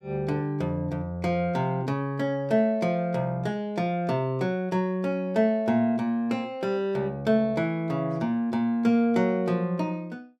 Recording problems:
none

